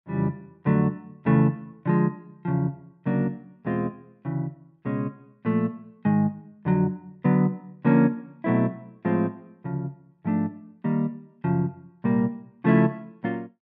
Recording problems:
none

